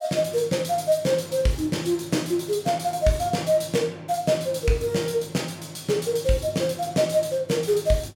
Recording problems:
none

